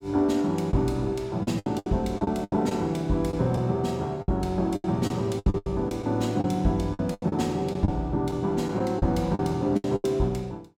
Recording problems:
packet loss; 12% of the sound replaced, filled with the last packet

